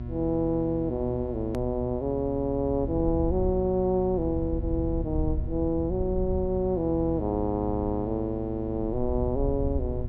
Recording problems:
mains hum; 60 Hz, harmonics up to 720 Hz, SNR 11 dB
low-frequency rumble; below 72 Hz, SNR 8 dB
hard cut with a click; at 1.5 s

